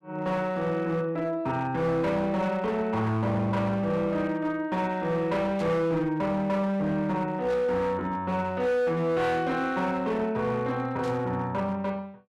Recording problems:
distorted audio; hard clipping, signal-to-distortion ratio 12 dB
static burst; 4 times, first at 2.5 s; peak -13 dB vs average level

